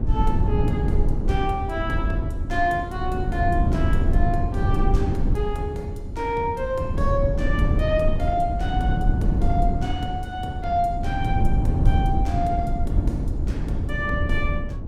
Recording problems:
low-frequency rumble; below 120 Hz, SNR -2 dB

